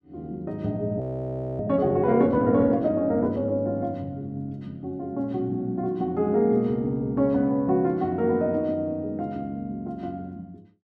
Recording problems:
audio freezing; at 1 s for 0.5 s

